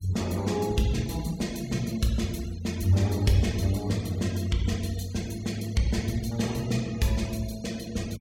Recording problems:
noise reduction artefacts; signal-to-artefact ratio 19 dB

